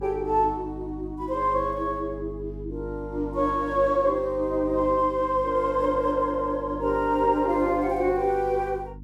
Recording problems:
mains hum; 50 Hz, harmonics up to 300 Hz, SNR 16 dB

